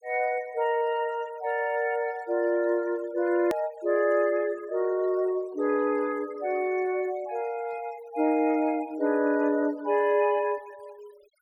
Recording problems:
noise reduction artefacts; signal-to-artefact ratio 25 dB
edit click; at 3.5 s

